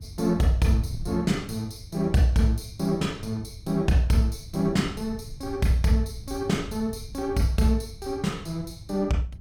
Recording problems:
wind noise; below 110 Hz, SNR 15 dB

